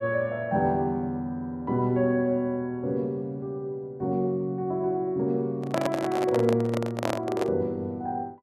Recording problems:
handling noise; from 5.5 to 7.5 s; peak +3 dB vs average level

